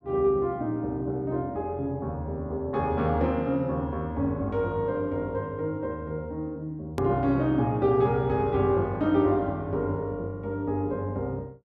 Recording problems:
click at an edit; at 7 s

